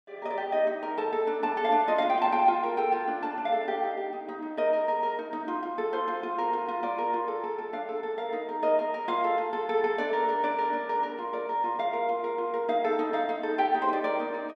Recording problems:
none

